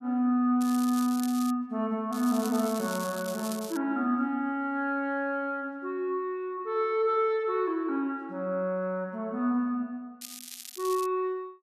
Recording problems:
crackle; at 0.5 s, from 2 to 4 s and at 10 s; loose cable, SNR 13 dB

